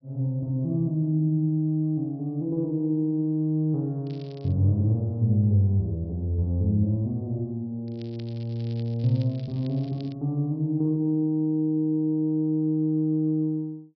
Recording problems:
treble missing; nothing above 5.5 kHz
crackling; at 4 s and from 8 to 10 s; loose cable, SNR 27 dB

